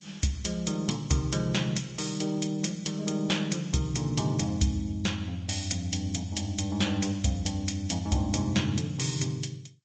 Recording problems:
lossy compression; MP3, then G.722, log-spectral distance 4 dB, nothing above 7.3 kHz

